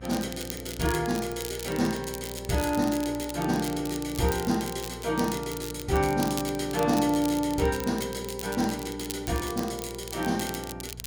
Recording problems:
hum; 60 Hz, harmonics up to 660 Hz, SNR 16 dB
crackle; vinyl, SNR 11 dB

